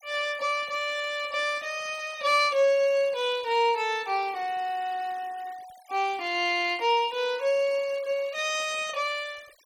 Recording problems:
denoising artefacts; signal-to-artefact ratio 22 dB

